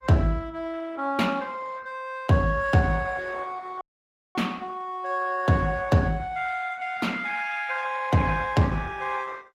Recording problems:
codec artefacts; Opus, log-spectral distance 3 dB, nothing above 16.6 kHz
audio cutting out; at 4 s for 0.5 s

